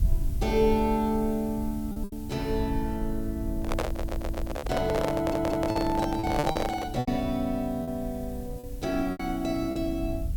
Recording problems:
hiss; slope +1 dB per octave, SNR 22 dB
low-frequency rumble; below 74 Hz, SNR 8 dB
lost packets; 6% of the sound replaced, filled with repeated pitch periods
microphone handling noise; from 3.5 to 7 s; peak +4 dB vs average level
stutter; at 4 s and at 5 s

